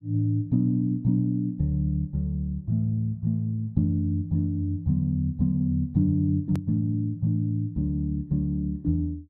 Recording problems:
edit click; at 6.5 s

